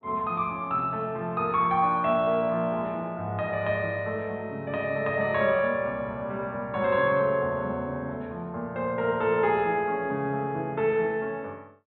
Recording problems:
treble cut off; nothing above 4 kHz

